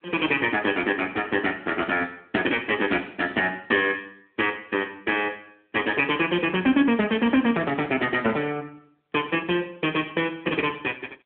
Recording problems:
telephone audio; 220 Hz to 3.5 kHz, AMR-NB

